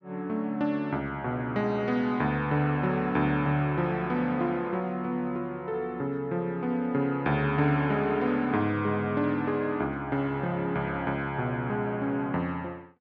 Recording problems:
none

